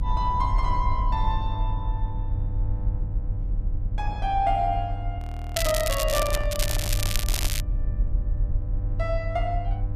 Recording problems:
electrical hum; 50 Hz, harmonics up to 800 Hz, SNR 7 dB
rumble; below 50 Hz, SNR 2 dB
frozen audio; at 5 s
crackle; at 5.5 s and from 6.5 to 7.5 s; loose cable, SNR 1 dB
handling noise; from 6 to 7.5 s; peak -4 dB vs average level

